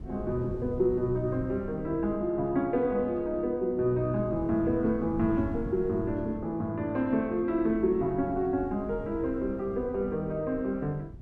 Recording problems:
wind noise; below 160 Hz, SNR 15 dB

